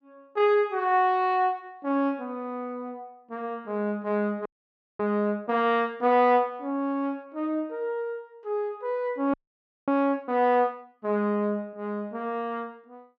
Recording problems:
frozen audio; at 4.5 s for 0.5 s and at 9.5 s for 0.5 s

